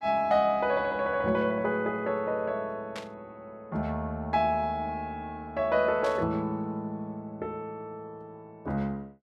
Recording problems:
burst of static; at 3 s and at 6 s; peak -7 dB vs average level

